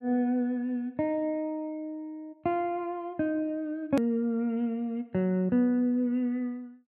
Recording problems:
hard cut with a click; at 4 s

